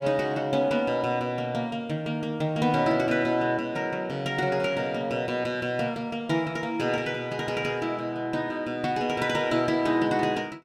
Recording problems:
none

